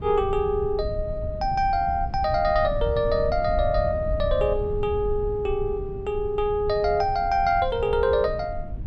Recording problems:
low-frequency rumble; below 98 Hz, SNR 9 dB

